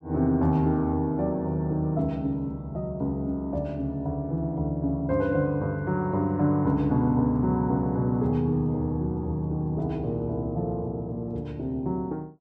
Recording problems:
none

